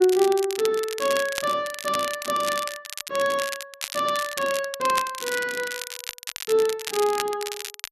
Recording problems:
crackle; vinyl, SNR 8 dB

